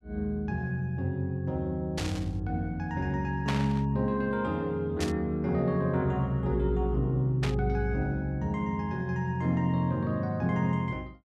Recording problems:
burst of static; 4 times, first at 2 s; peak 0 dB vs average level

